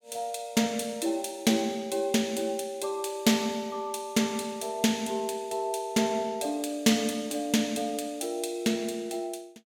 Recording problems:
none

